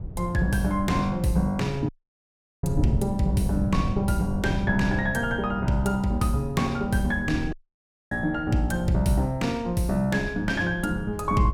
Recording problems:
wind on the microphone; below 140 Hz, SNR 9 dB
dropout; at 2 s for 0.5 s and at 7.5 s for 0.5 s

